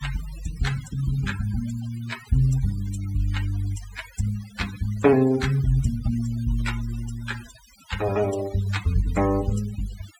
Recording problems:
denoising artefacts; signal-to-artefact ratio 15 dB

